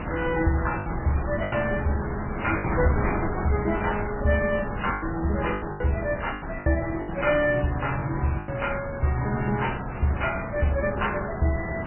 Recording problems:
lossy codec; MP3, then AAC, log-spectral distance 8 dB, nothing above 2.8 kHz
wind on the microphone; below 830 Hz, SNR 6 dB
packet loss; 6% of the sound replaced, filled with the last packet

